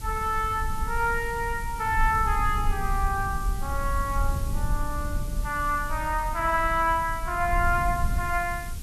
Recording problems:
background hiss; slope +2 dB per octave, SNR 17 dB
low-frequency rumble; below 68 Hz, SNR 6 dB

